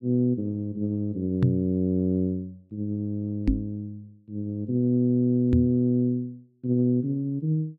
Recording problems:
microphone bump; at 1.5 s, at 3.5 s and at 5.5 s; peak +7 dB vs average level

